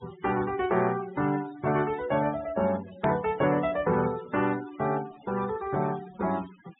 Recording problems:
low-pass filter; nothing above 4 kHz
noise reduction artefacts; signal-to-artefact ratio 17 dB
edit click; at 3 s

